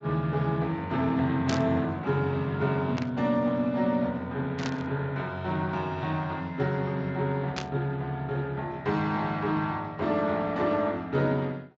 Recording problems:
lossy codec; Speex, log-spectral distance 2 dB
static burst; 4 times, first at 1.5 s; peak -2 dB vs average level

